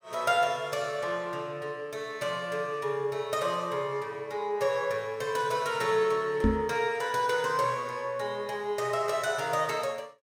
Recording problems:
microphone bump; at 6.5 s; peak +7 dB vs average level

